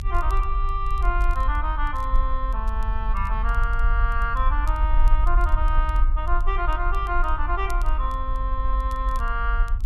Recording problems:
low-frequency rumble; below 46 Hz, SNR -2 dB
crackling; vinyl, SNR 26 dB

